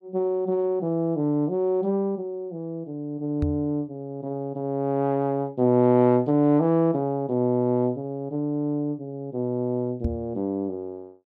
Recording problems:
microphone thump; at 3.5 s and at 10 s; peak +2 dB vs average level

